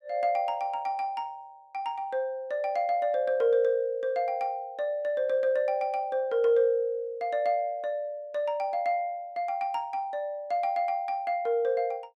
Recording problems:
none

